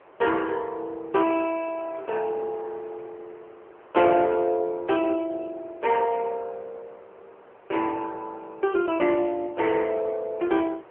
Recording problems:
telephone audio; 300 Hz to 3.1 kHz, AMR-NB
wind noise; below 1.2 kHz, SNR 24 dB

